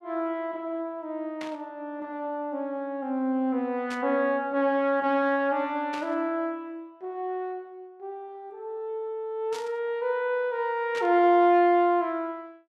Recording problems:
static burst; 5 times, first at 1.5 s; peak -8 dB vs average level

